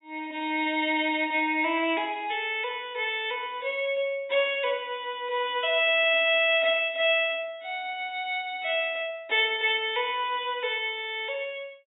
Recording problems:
treble missing; nothing above 4 kHz

